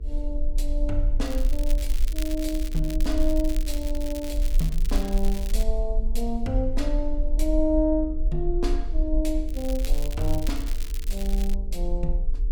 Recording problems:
hum; 50 Hz, harmonics up to 450 Hz, SNR 20 dB
rumble; below 40 Hz, strongest tone 20 Hz, SNR -1 dB
crackle; from 1 to 5.5 s and from 9.5 to 12 s; loose cable, SNR 12 dB

